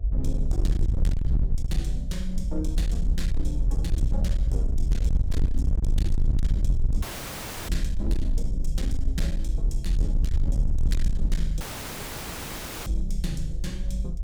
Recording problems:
distortion; hard clipping, signal-to-distortion ratio 6 dB
electrical hum; 60 Hz, harmonics up to 720 Hz, SNR 23 dB
low-frequency rumble; below 60 Hz, SNR -6 dB
dropout; at 7 s for 0.5 s and at 12 s for 1.5 s

